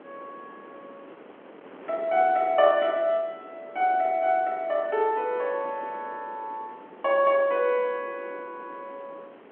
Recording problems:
phone line; 220 Hz to 3.3 kHz, G.711
wind on the microphone; below 970 Hz, SNR 22 dB

